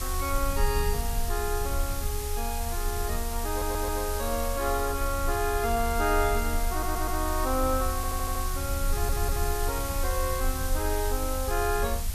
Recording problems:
hiss; slope +1 dB per octave, SNR 5 dB
rumble; below 76 Hz, strongest tone 30 Hz, SNR 3 dB
stutter; 4 times, first at 3.5 s

